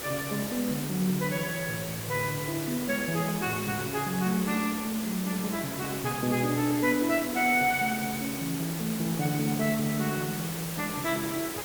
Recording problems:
background hiss; slope -3 dB per octave, SNR 6 dB

